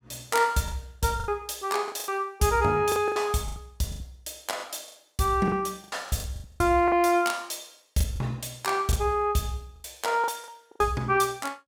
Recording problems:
lost packets; 12% of the sound replaced, filled with the last packet

